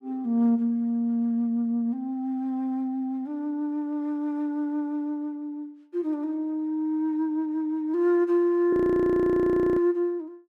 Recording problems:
frozen audio; at 8.5 s for 1 s

